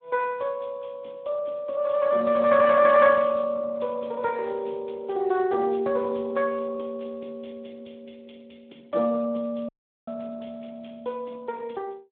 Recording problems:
telephone audio; 190 Hz to 2.8 kHz, Speex
dropout; at 9.5 s

